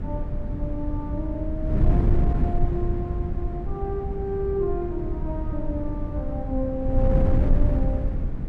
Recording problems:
wind on the microphone; below 110 Hz, SNR -4 dB

